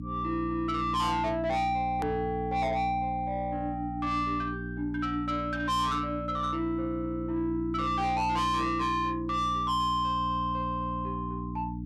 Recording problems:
distortion; soft clipping, signal-to-distortion ratio 7 dB
mains hum; 60 Hz, harmonics up to 300 Hz, SNR 8 dB
edit click; at 2 s

